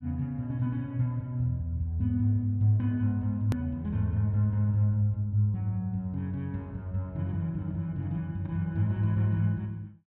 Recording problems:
hard cut with a click; at 3.5 s

